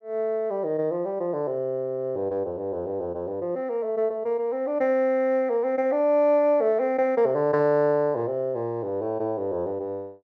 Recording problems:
none

